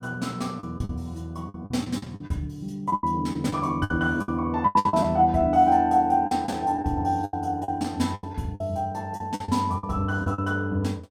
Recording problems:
packet loss; 12% of the sound replaced, filled with the last packet

